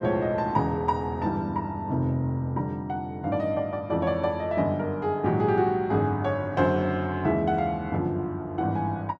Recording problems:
none

